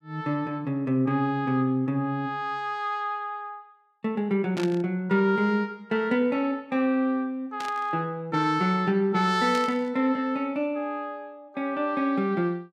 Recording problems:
static burst; at 4.5 s, at 7.5 s and at 9.5 s; peak -6 dB vs average level

